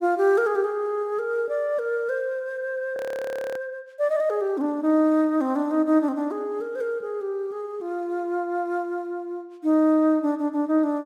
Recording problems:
frozen audio; at 3 s for 0.5 s

